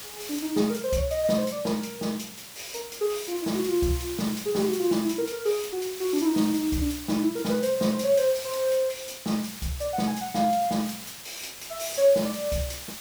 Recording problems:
hiss; slope +1 dB per octave, SNR 11 dB

